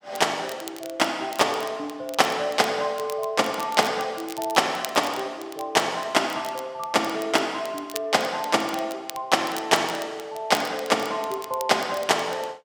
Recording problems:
crackling; vinyl, SNR 17 dB

